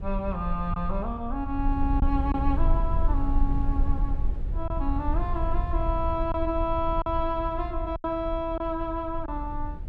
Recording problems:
low-frequency rumble; below 62 Hz, SNR 1 dB
packet loss; 3% of the sound replaced, filled with silence

